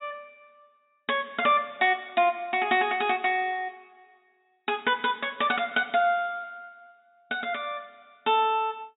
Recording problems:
treble cut off; nothing above 4 kHz

